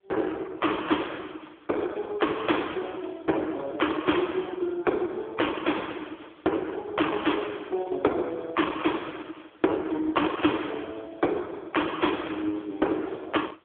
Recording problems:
phone line; 280 Hz to 3.5 kHz, AMR-NB

